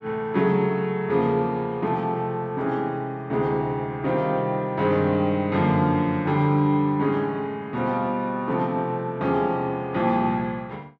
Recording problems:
none

